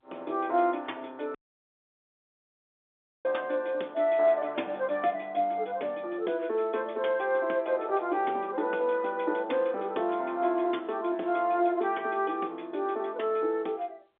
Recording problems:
telephone audio; 260 Hz to 3.7 kHz, G.711
audio cutting out; at 1.5 s for 2 s

